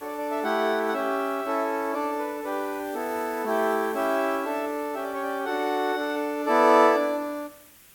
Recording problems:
hiss; SNR 22 dB

